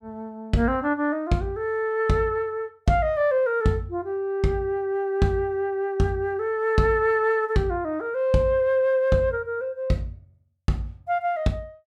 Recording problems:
none

